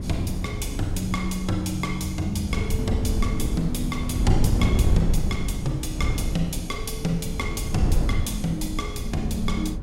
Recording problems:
wind on the microphone; below 120 Hz, SNR 0 dB

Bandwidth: 16 kHz